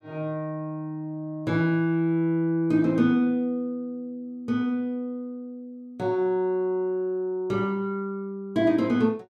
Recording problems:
none

